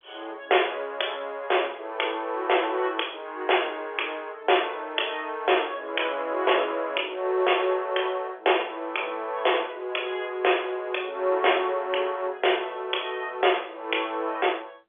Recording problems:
telephone audio; 300 Hz to 3.5 kHz, G.711

